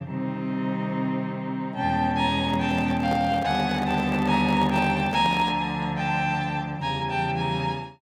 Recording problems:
handling noise; from 2.5 to 5.5 s; peak -5 dB vs average level

